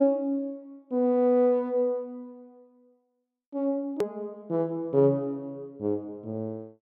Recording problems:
click at an edit; at 4 s

